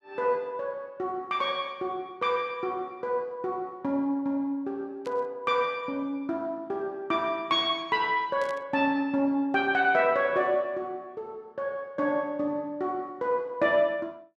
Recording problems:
static burst; at 5 s and at 8.5 s; peak -14 dB vs average level

